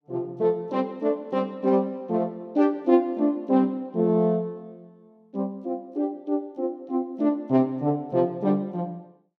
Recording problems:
none

